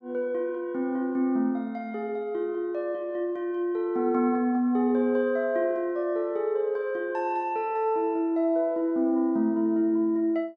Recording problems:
none

